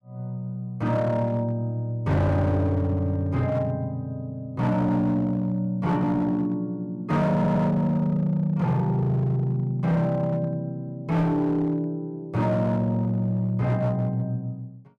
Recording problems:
distortion; hard clipping, signal-to-distortion ratio 11 dB
stutter; at 7.5 s

